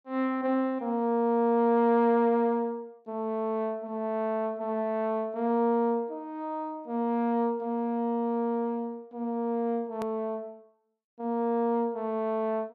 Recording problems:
hard cut with a click; at 10 s

